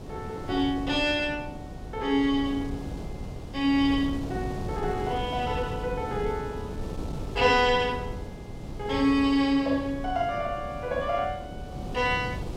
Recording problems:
wind noise; below 300 Hz, SNR 10 dB

